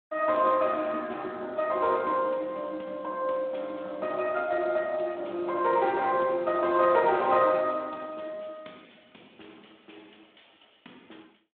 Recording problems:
phone line; 240 Hz to 3.7 kHz, Speex

